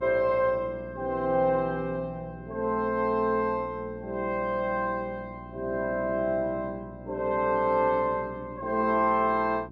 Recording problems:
hum; 60 Hz, harmonics up to 720 Hz, SNR 17 dB

